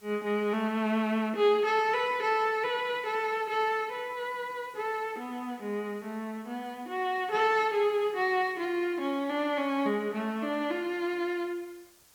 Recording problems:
background hiss; slope -1 dB per octave, SNR 29 dB

